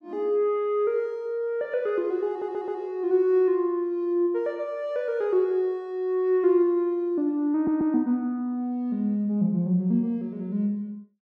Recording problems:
stutter; at 2.5 s and at 7.5 s

